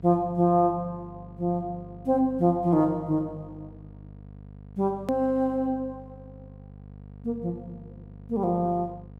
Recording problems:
mains hum; 50 Hz, harmonics up to 950 Hz, SNR 19 dB
edit click; at 5 s

